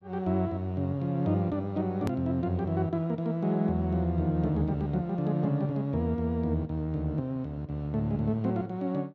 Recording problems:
click at an edit; at 2 s

